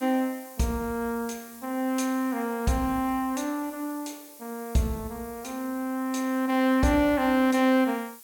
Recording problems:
background hiss; slope +2 dB per octave, SNR 19 dB

